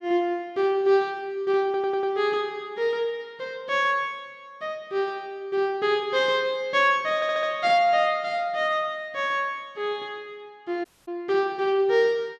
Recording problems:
audio stuttering; at 1.5 s and at 7 s
audio cutting out; at 11 s

